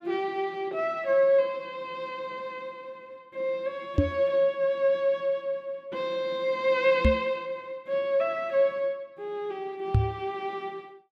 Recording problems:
microphone bump; at 4 s, at 7 s and at 10 s; peak +8 dB vs average level

